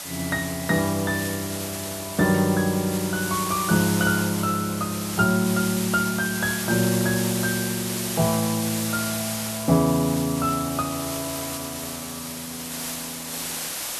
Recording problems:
hiss; slope 0 dB per octave, SNR 6 dB

